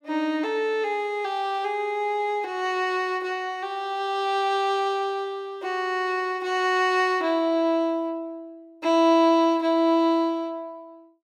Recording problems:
none

